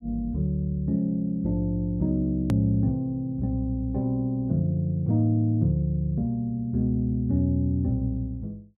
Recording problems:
hard cut with a click; at 2.5 s

